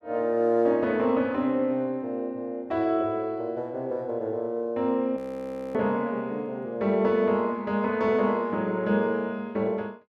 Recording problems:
audio freezing; at 5 s for 0.5 s

